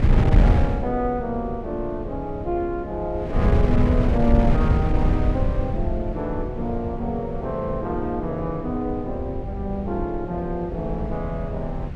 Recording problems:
rumble; below 94 Hz, SNR 9 dB
wind on the microphone; below 130 Hz, SNR -2 dB

